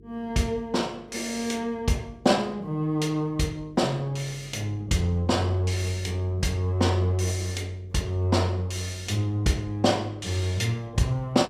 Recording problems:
electrical hum; 50 Hz, harmonics up to 450 Hz, SNR 25 dB

